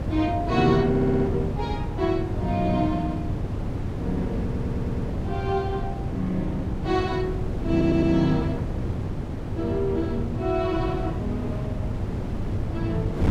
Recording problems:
wind noise; below 240 Hz, SNR 3 dB
audio stuttering; at 1 s, at 4.5 s and at 7.5 s

